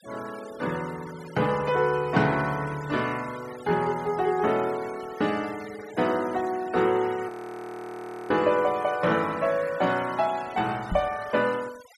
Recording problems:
noise reduction artefacts; signal-to-artefact ratio 19 dB
audio freezing; at 7.5 s for 1 s
microphone thump; at 11 s; peak -1 dB vs average level

